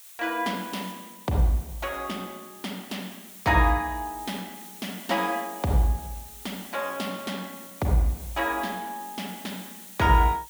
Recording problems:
hiss; slope +3 dB per octave, SNR 15 dB

